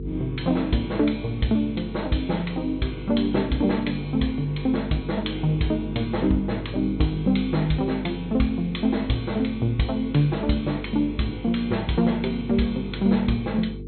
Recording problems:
treble missing; nothing above 4.2 kHz
hum; 50 Hz, harmonics up to 450 Hz, SNR 11 dB

